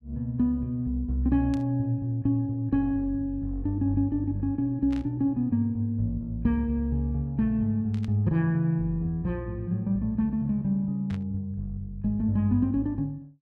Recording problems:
static burst; 4 times, first at 1.5 s; peak -14 dB vs average level

